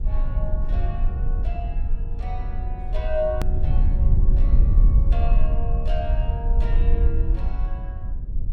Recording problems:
low-frequency rumble; below 58 Hz, SNR -10 dB
edit click; at 3.5 s

